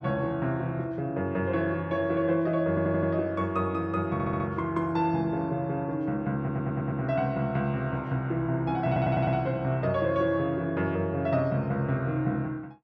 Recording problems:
audio stuttering; 4 times, first at 2.5 s

